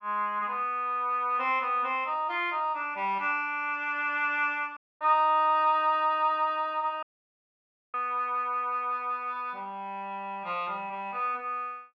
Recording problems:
audio cutting out; at 5 s and at 7 s for 1 s

